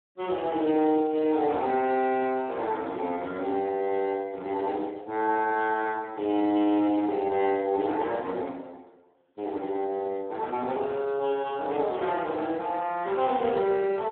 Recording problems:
telephone audio; 280 Hz to 3.7 kHz, Speex

